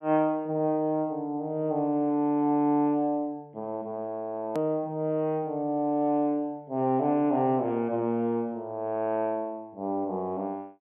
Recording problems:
low-pass filter; nothing above 3.4 kHz
hard cut with a click; at 4.5 s

